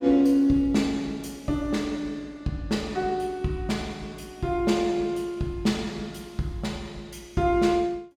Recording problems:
none

